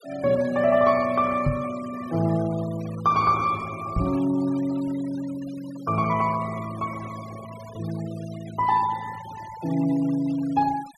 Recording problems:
denoising artefacts; signal-to-artefact ratio 19 dB
microphone thump; at 1.5 s and at 4 s; peak +4 dB vs average level

